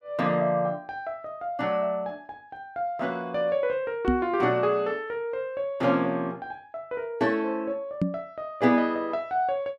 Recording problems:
microphone thump; at 4 s and at 8 s; peak +6 dB vs average level

